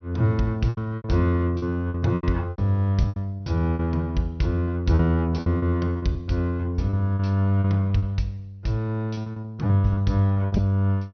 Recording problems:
treble cut off; nothing above 6.1 kHz
packet loss; 13% of the sound replaced, filled with repeated pitch periods

